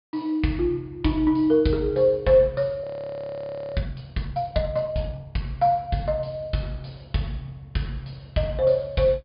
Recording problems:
low-pass filter; nothing above 5 kHz
audio freezing; at 3 s for 1 s

